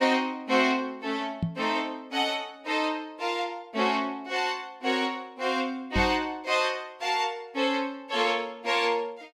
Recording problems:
microphone bump; at 1.5 s and at 6 s; peak +3 dB vs average level

